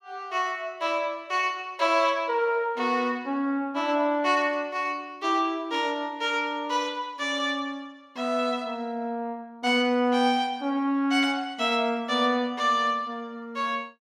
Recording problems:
none

